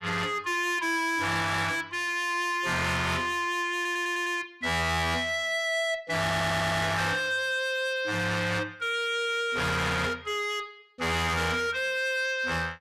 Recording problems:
distortion; hard clipping, uneven, signal-to-distortion ratio 6 dB
audio stuttering; at 4 s and at 6 s

